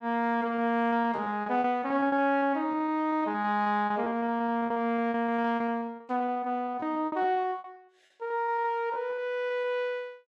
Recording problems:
lost packets; 16% of the sound replaced, filled with repeated pitch periods

